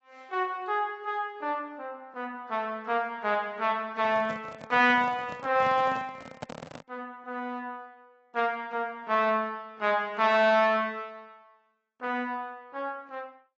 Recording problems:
lossy compression; AAC, log-spectral distance 2 dB, nothing above 7.3 kHz
microphone handling noise; from 4 to 7 s; peak -5 dB vs average level

